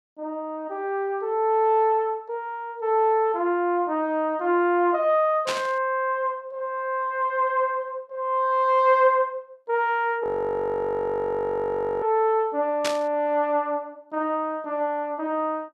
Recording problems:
burst of static; at 5.5 s and at 13 s; peak 0 dB vs average level
audio freezing; at 10 s for 2 s

